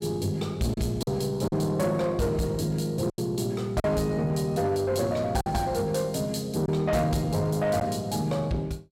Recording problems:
distorted audio; soft clipping, signal-to-distortion ratio 11 dB
packet loss; 4% of the sound replaced, filled with silence

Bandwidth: 16.5 kHz